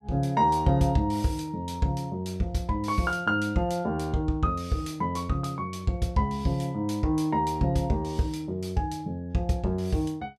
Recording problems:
none

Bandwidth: 14.5 kHz